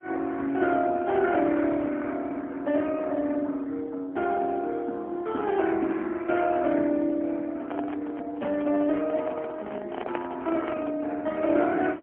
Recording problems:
telephone audio; 190 Hz to 3.3 kHz, AMR-NB, then MP3
handling noise; from 7.5 to 11 s; peak -3 dB vs average level

